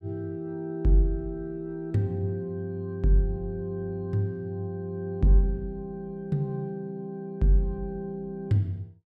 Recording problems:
none

